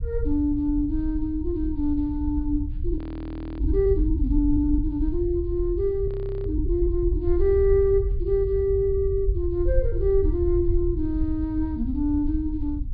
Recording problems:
treble cut off; nothing above 4.8 kHz
rumble; below 70 Hz, SNR 4 dB
frozen audio; at 3 s for 0.5 s and at 6 s

